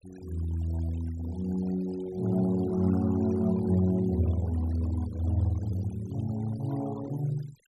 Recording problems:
denoising artefacts; signal-to-artefact ratio 21 dB

